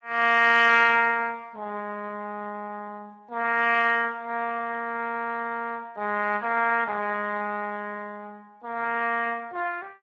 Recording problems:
codec artefacts; Speex, log-spectral distance 3 dB, nothing above 7.3 kHz

